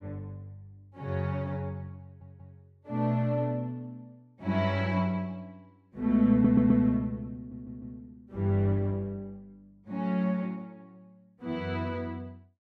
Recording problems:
stutter; at 2 s, at 6.5 s and at 7.5 s

